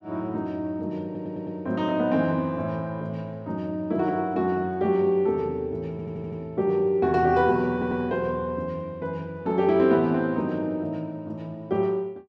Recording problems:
audio stuttering; at 1 s, at 6 s and at 7.5 s

